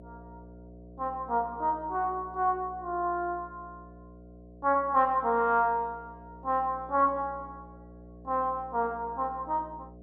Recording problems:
electrical hum; 60 Hz, harmonics up to 720 Hz, SNR 21 dB

